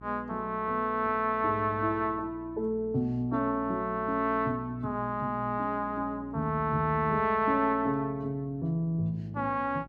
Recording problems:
hum; 60 Hz, harmonics up to 720 Hz, SNR 19 dB

